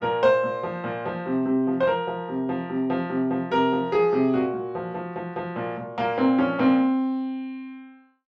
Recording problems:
none

